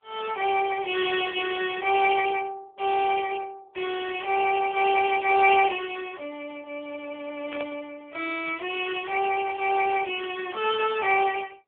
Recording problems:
phone line; 320 Hz to 3.1 kHz, AMR-NB
static burst; at 7.5 s and at 9.5 s; peak -13 dB vs average level

